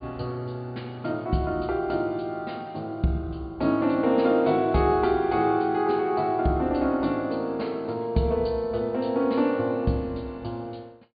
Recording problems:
low-pass filter; nothing above 4.7 kHz

